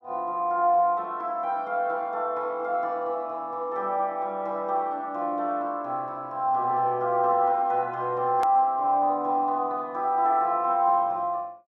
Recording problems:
hard cut with a click; at 8.5 s

